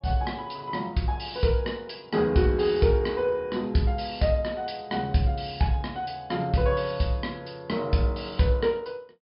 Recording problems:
treble missing; nothing above 5.5 kHz

